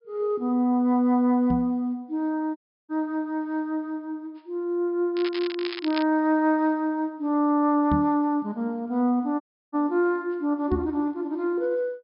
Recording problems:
low-pass filter; nothing above 5.5 kHz
knock on the microphone; at 1.5 s, at 8 s and at 11 s; peak +2 dB vs average level
dropout; at 2.5 s and at 9.5 s
crackle; at 5 s; loose cable, SNR 11 dB

